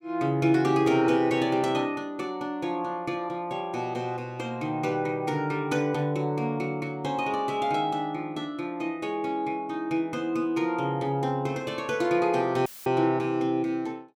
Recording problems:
dropout; at 13 s; filled with static

